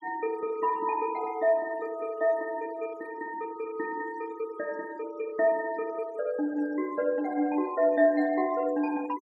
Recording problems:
denoising artefacts; signal-to-artefact ratio 22 dB

